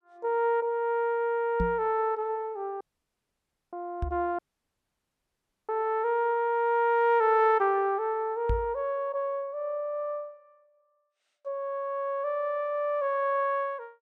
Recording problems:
microphone thump; at 1.5 s, at 4 s and at 8.5 s; peak +1 dB vs average level
dropout; at 3 s for 1 s and at 4.5 s for 1.5 s

